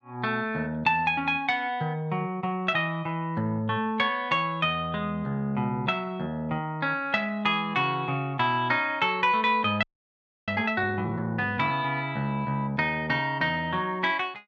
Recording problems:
audio freezing; at 10 s for 0.5 s

